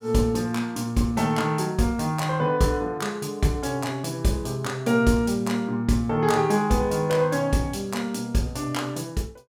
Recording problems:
none

